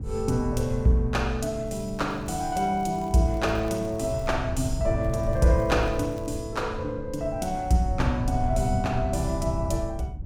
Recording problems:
wind noise; below 110 Hz, SNR 7 dB
crackling; from 1.5 to 4.5 s and from 5 to 6.5 s; loose cable, SNR 29 dB

